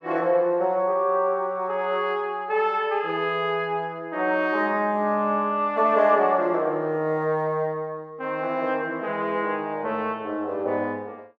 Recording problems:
none

